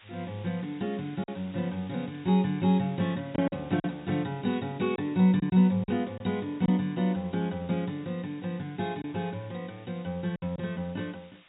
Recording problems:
low-pass filter; nothing above 4 kHz
hiss; SNR 25 dB
lost packets; 3% of the sound replaced, filled with silence

